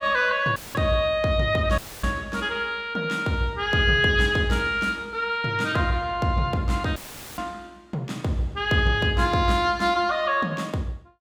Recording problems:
audio cutting out; at 0.5 s, at 2 s and at 7 s; filled with static

